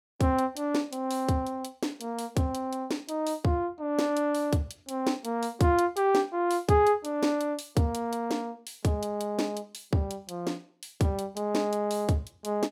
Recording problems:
none

